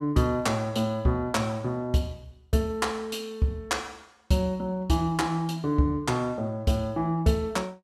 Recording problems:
none

